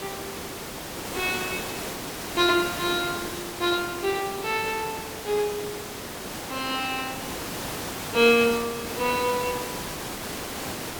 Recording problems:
hiss; slope -4 dB per octave, SNR 7 dB

